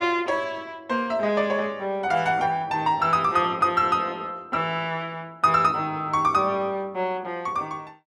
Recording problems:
none

